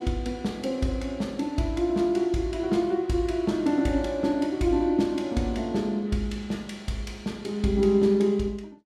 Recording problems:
none

